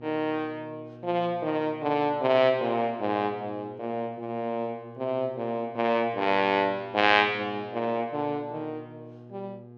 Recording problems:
hum; 60 Hz, harmonics up to 1.2 kHz, SNR 20 dB

